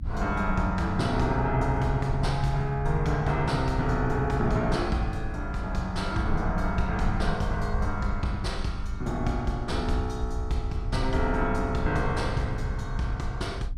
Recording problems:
hum; 50 Hz, harmonics up to 300 Hz, SNR 21 dB
low-frequency rumble; below 76 Hz, SNR 6 dB

